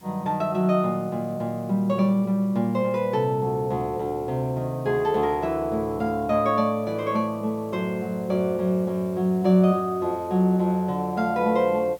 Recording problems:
hiss; slope -3 dB per octave, SNR 29 dB

